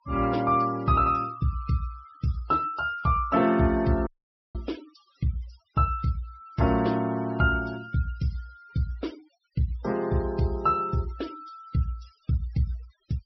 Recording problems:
treble cut off; nothing above 5.6 kHz
noise reduction artefacts; signal-to-artefact ratio 22 dB
audio cutting out; at 4 s

